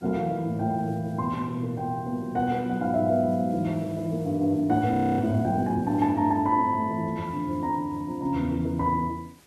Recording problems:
hiss; slope -3 dB per octave, SNR 30 dB
audio freezing; at 5 s

